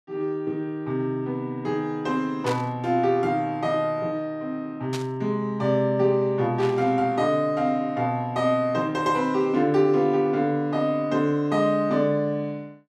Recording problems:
static burst; at 2.5 s, at 5 s and at 6.5 s; peak -6 dB vs average level

